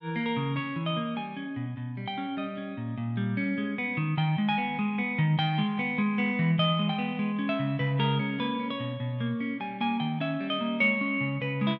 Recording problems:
none

